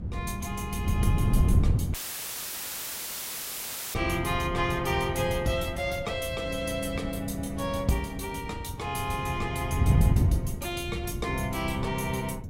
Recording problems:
hum; 60 Hz, harmonics up to 480 Hz, SNR 19 dB
wind noise; below 150 Hz, SNR 0 dB
dropout; at 2 s for 2 s; filled with static

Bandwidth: 16 kHz